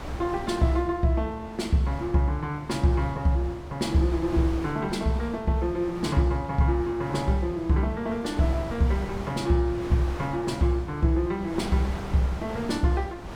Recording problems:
wind noise; below 910 Hz, SNR 13 dB

